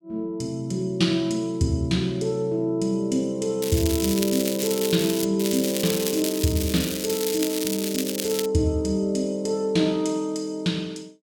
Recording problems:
crackling; from 3.5 to 5 s and from 5.5 to 8.5 s; loose cable, SNR 5 dB

